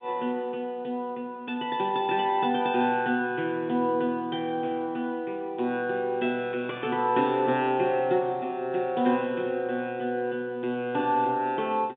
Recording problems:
phone line; 150 Hz to 3.7 kHz, G.711

